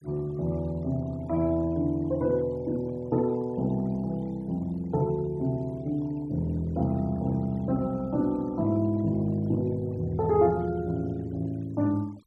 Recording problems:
denoising artefacts; signal-to-artefact ratio 26 dB

